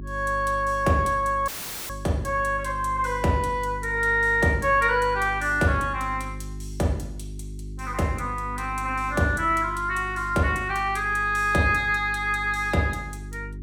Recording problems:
hum; 50 Hz, harmonics up to 400 Hz, SNR 13 dB
audio cutting out; at 1.5 s

